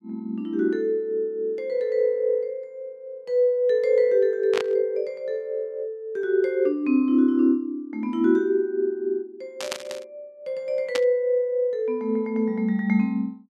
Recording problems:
static burst; at 4.5 s, at 9.5 s and at 11 s; peak -1 dB vs average level

